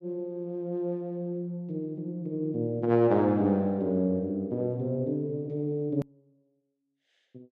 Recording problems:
click at an edit; at 6 s

